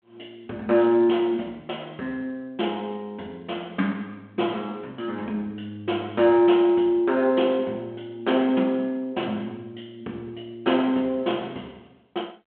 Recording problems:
phone line; 190 Hz to 3.4 kHz, G.726

